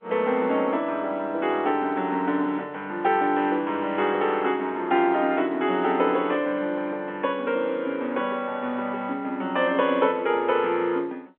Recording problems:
telephone audio; 220 Hz to 3.5 kHz, G.711

